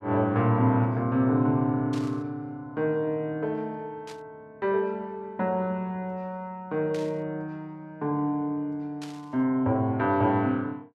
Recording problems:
static burst; 4 times, first at 2 s; peak -11 dB vs average level

